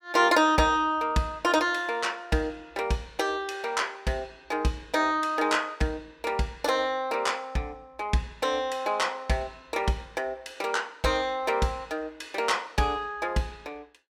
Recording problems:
none

